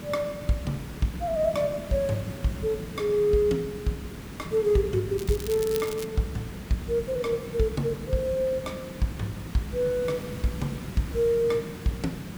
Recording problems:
background hiss; SNR 11 dB
crackle; at 5 s; loose cable, SNR 13 dB

